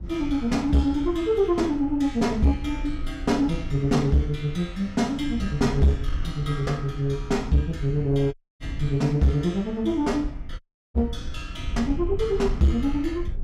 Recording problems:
distorted audio; soft clipping, signal-to-distortion ratio 12 dB
rumble; below 72 Hz, SNR 11 dB
dropout; at 8.5 s and at 11 s

